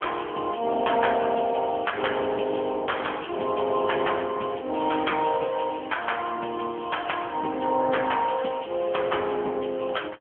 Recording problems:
phone line; 220 Hz to 3.4 kHz, AMR-NB

